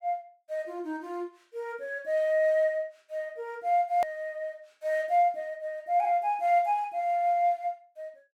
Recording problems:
hard cut with a click; at 4 s

